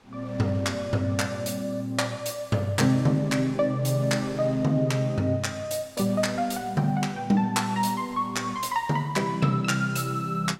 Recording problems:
wind noise; below 2.3 kHz, SNR 25 dB

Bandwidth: 16.5 kHz